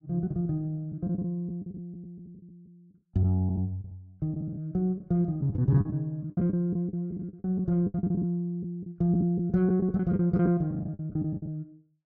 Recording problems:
packet loss; 14% of the sound replaced, filled with the last packet

